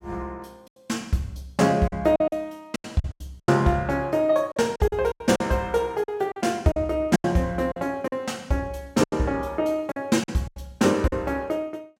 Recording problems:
packet loss; 10% of the sound replaced, filled with silence

